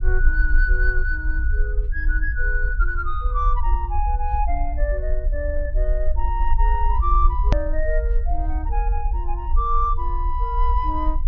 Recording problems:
low-pass filter; nothing above 6.5 kHz
rumble; below 50 Hz, SNR -3 dB
edit click; at 7.5 s

